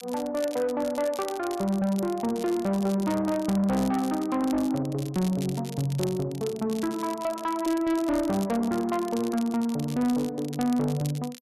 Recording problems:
distorted audio; soft clipping, signal-to-distortion ratio 11 dB
crackle; vinyl, SNR 17 dB

